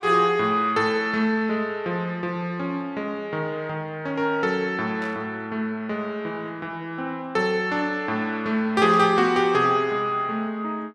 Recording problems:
static burst; at 5 s and at 9 s; peak -11 dB vs average level

